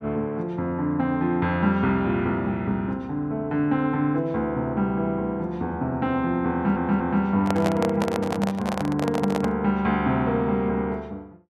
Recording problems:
audio stuttering; at 6.5 s
microphone handling noise; from 7.5 to 9.5 s; peak +1 dB vs average level

